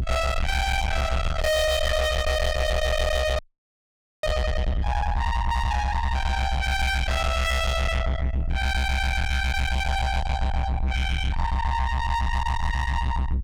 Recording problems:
distorted audio; soft clipping, signal-to-distortion ratio 7 dB
low-frequency rumble; below 680 Hz, SNR 1 dB
frozen audio; at 3.5 s for 1 s

